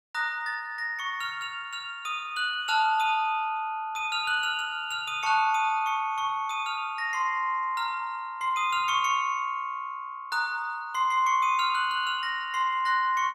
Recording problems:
none

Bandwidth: 16 kHz